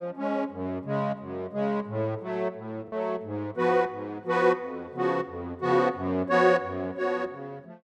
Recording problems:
packet loss; 0.5% of the sound replaced, filled with the last packet

